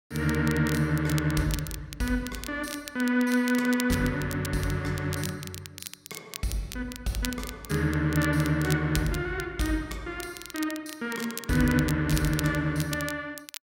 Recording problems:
crackling; vinyl, SNR 12 dB

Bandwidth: 16 kHz